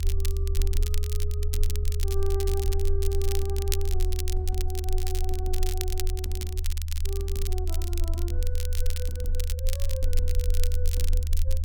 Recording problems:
low-frequency rumble; below 76 Hz, strongest tone 18 Hz, SNR -8 dB
crackle; vinyl, SNR 1 dB

